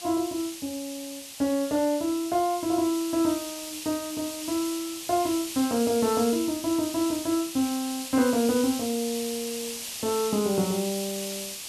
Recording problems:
background hiss; SNR 8 dB

